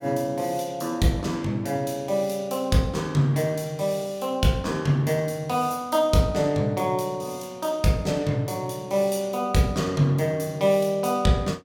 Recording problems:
none

